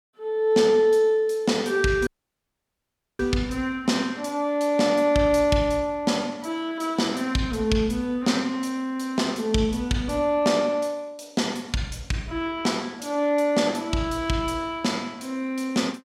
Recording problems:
audio cutting out; at 2 s for 1 s

